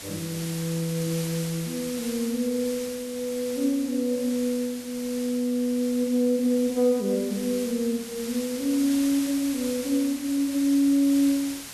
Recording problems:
hiss; slope 0 dB per octave, SNR 11 dB

